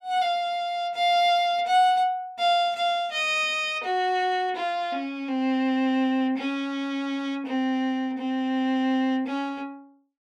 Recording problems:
none

